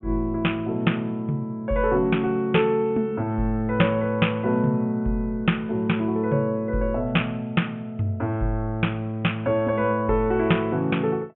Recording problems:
treble cut off; nothing above 3.4 kHz

